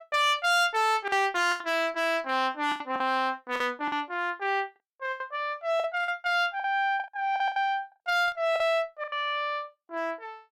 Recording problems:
distorted audio; hard clipping, uneven, signal-to-distortion ratio 11 dB
packet loss; 9% of the sound replaced, filled with the last packet

